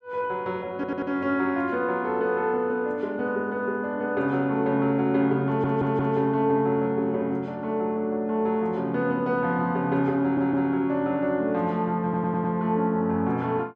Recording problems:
audio stuttering; 4 times, first at 0.5 s

